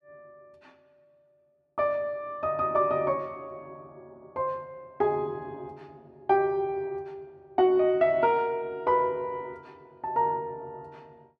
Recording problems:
none

